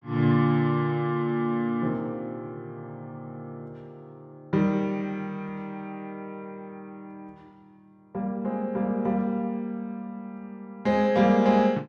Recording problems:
none

